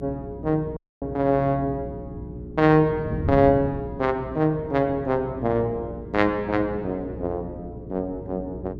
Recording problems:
hum; 60 Hz, harmonics up to 420 Hz, SNR 15 dB
wind noise; below 200 Hz, SNR 13 dB
audio cutting out; at 1 s

